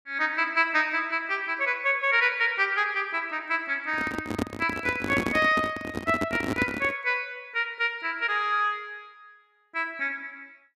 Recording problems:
microphone handling noise; from 4 to 7 s; peak +2 dB vs average level

